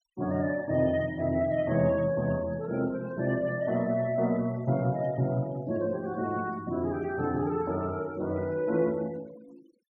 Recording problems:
noise reduction artefacts; signal-to-artefact ratio 24 dB

